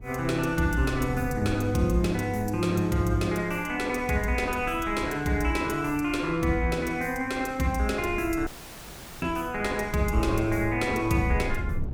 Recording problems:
wind on the microphone; below 110 Hz, SNR 13 dB
dropout; at 8.5 s for 1 s

